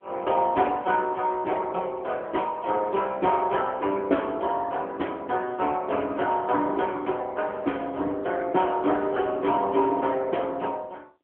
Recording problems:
phone line; 240 Hz to 3.3 kHz, AMR-NB

